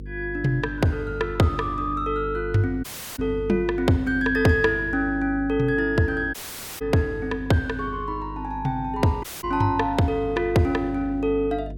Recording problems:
mains hum; 50 Hz, harmonics up to 500 Hz, SNR 13 dB
audio cutting out; at 3 s, at 6.5 s and at 9 s

